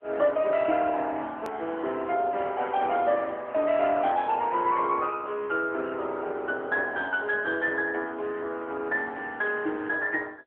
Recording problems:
telephone audio; 280 Hz to 3.3 kHz, AMR-NB
hard cut with a click; at 1.5 s

